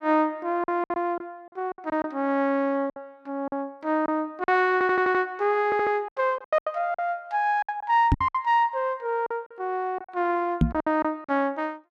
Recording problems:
lost packets; 11% of the sound replaced, filled with silence
stutter; at 4.5 s and at 5.5 s
knock on the microphone; at 8 s and at 11 s; peak +8 dB vs average level

